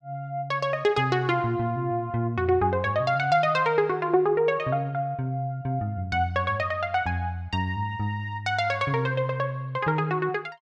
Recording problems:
none

